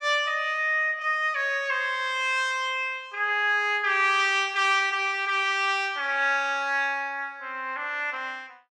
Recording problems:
none

